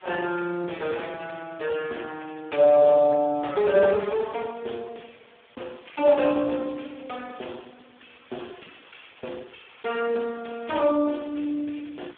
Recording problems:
phone line; 260 Hz to 3.5 kHz, Speex
background hiss; SNR 28 dB

